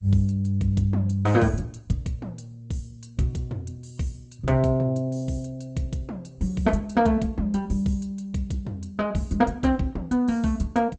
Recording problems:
lossy compression; G.722, then Opus, log-spectral distance 3 dB, nothing above 8 kHz

